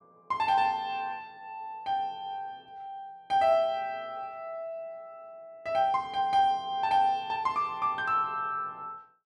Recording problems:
none

